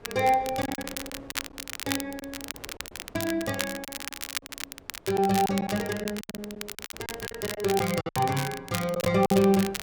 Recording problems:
wind noise; below 680 Hz, SNR 24 dB
crackling; vinyl, SNR 9 dB
lost packets; 10% of the sound replaced, filled with silence

